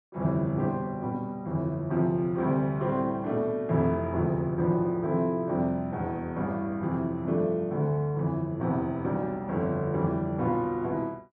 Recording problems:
none

